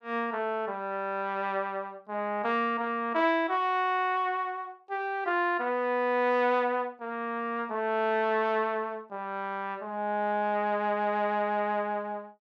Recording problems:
none

